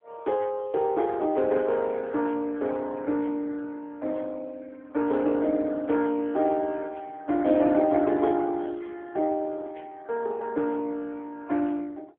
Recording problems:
telephone audio; 240 Hz to 2.1 kHz, AMR-NB

